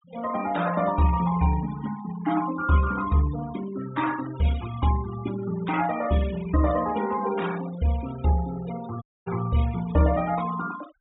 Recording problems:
low-pass filter; nothing above 4 kHz
noise reduction artefacts; signal-to-artefact ratio 15 dB
dropout; at 9 s

